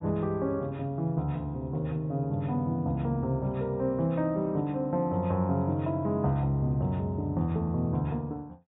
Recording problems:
low-pass filter; nothing above 3.8 kHz

